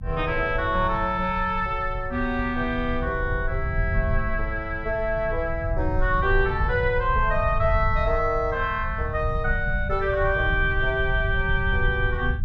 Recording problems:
rumble; below 88 Hz, SNR 5 dB

